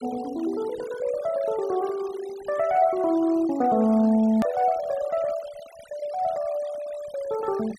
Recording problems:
noise reduction artefacts; signal-to-artefact ratio 21 dB
hard cut with a click; at 4.5 s

